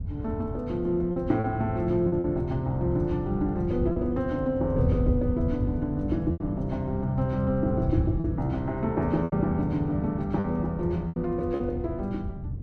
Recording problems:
wind noise; below 130 Hz, SNR 5 dB
lost packets; 5% of the sound replaced, filled with repeated pitch periods

